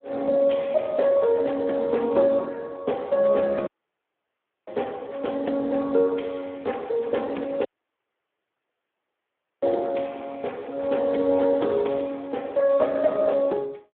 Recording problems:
phone line; 240 Hz to 3.4 kHz, Speex
audio cutting out; at 3.5 s for 1 s and at 7.5 s for 2 s

